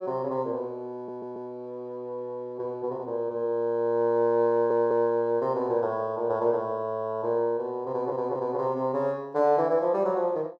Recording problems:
stutter; at 1 s, at 4.5 s and at 8 s

